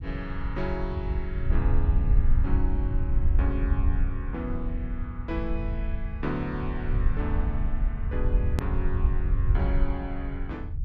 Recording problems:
rumble; below 72 Hz, SNR -6 dB
edit click; at 8.5 s

